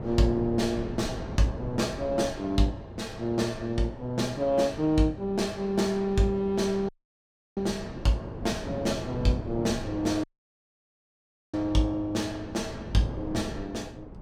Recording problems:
wind noise; below 390 Hz, SNR 11 dB
audio cutting out; at 7 s for 0.5 s and at 10 s for 1.5 s

